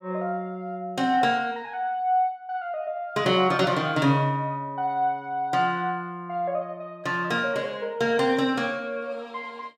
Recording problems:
none

